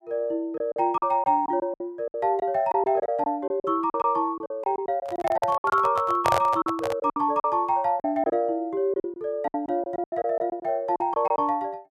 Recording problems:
lost packets; 13% of the sound replaced, filled with silence
handling noise; from 5 to 7 s; peak +3 dB vs average level

